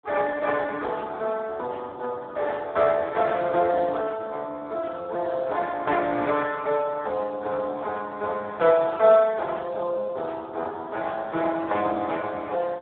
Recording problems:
phone line; 320 Hz to 3 kHz, Speex

